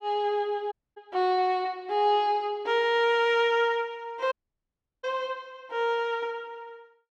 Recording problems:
audio cutting out; at 0.5 s and at 4.5 s for 0.5 s

